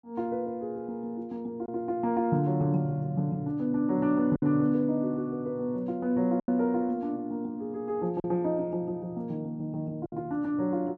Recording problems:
packet loss; 2% of the sound replaced, filled with silence

